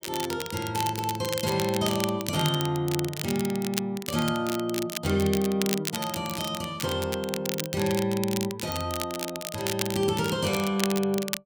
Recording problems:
crackling; vinyl, SNR 6 dB

